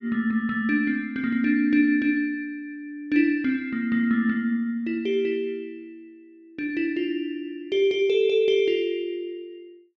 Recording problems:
none

